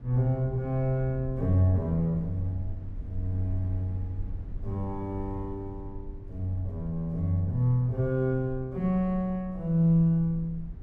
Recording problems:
low-frequency rumble; below 66 Hz, SNR 14 dB

